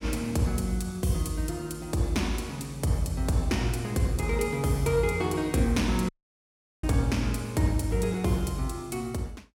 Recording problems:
dropout; at 6 s for 0.5 s

